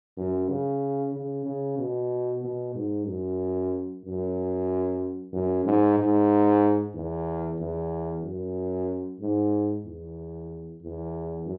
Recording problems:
treble cut off; nothing above 5.5 kHz

